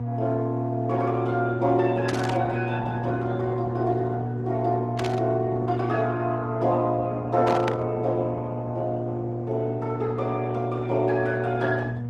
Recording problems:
lossy compression; Opus, then Opus, log-spectral distance 3 dB
hum; 60 Hz, harmonics up to 720 Hz, SNR 5 dB
static burst; at 2 s, at 5 s and at 7.5 s; peak -2 dB vs average level

